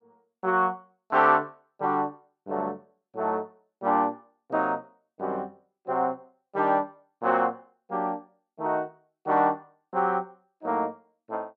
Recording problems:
none

